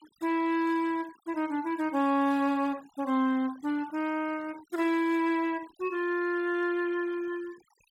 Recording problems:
denoising artefacts; signal-to-artefact ratio 24 dB

